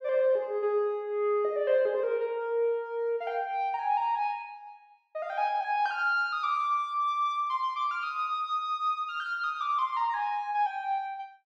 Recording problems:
none

